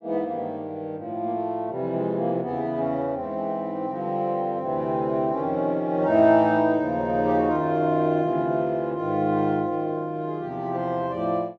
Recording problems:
none

